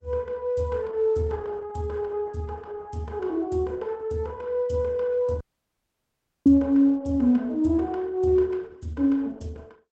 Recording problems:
lossy codec; Opus, log-spectral distance 2 dB, nothing above 8 kHz
dropout; at 5.5 s for 1 s

